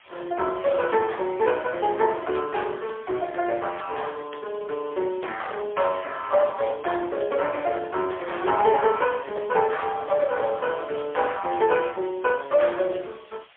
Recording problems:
telephone audio; 340 Hz to 3.4 kHz, AMR-NB, then MP3
background hiss; SNR 27 dB

